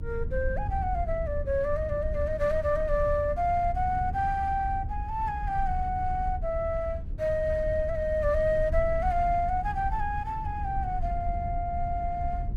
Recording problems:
rumble; below 76 Hz, SNR 6 dB

